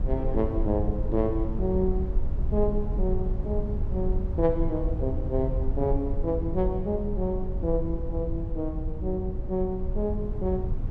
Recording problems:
low-frequency rumble; below 78 Hz, SNR 2 dB

